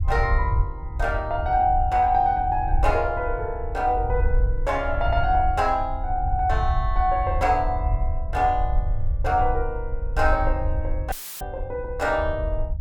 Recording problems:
low-frequency rumble; below 70 Hz, SNR 4 dB
dropout; at 11 s; filled with static

